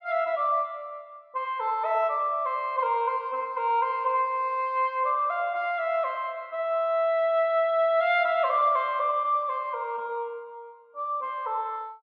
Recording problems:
none

